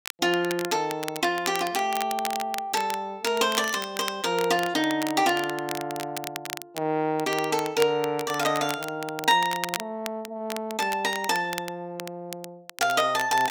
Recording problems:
crackling; vinyl, SNR 10 dB

